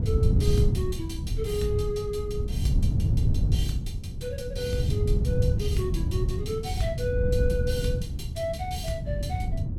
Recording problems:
wind noise; below 130 Hz, SNR -4 dB

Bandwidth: 18 kHz